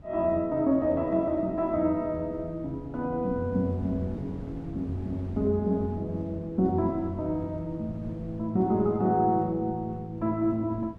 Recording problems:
wind on the microphone; below 220 Hz, SNR 17 dB

